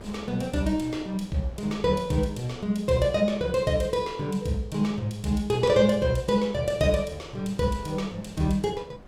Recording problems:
wind noise; below 570 Hz, SNR 22 dB

